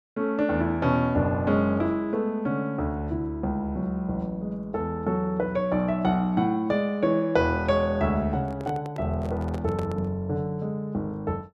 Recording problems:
microphone handling noise; from 8.5 to 10 s; peak -6 dB vs average level

